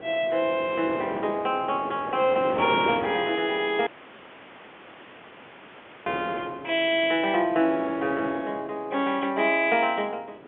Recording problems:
telephone audio; 220 Hz to 3.5 kHz, G.711
wind noise; below 850 Hz, SNR 11 dB
dropout; at 4 s for 2 s

